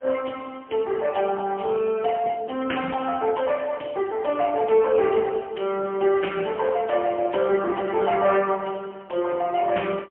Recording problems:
telephone audio; 280 Hz to 3.2 kHz, AMR-NB, then MP3

